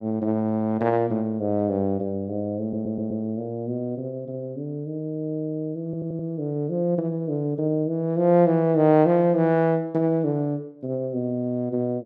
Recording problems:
stutter; at 2.5 s and at 6 s

